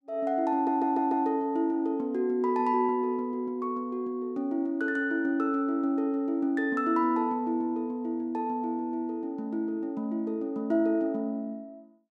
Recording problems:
audio stuttering; at 0.5 s

